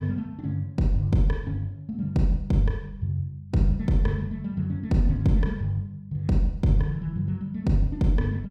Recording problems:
none

